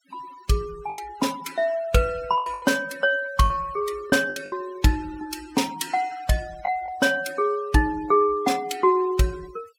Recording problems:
denoising artefacts; signal-to-artefact ratio 20 dB
packet loss; 5% of the sound replaced, filled with the last packet

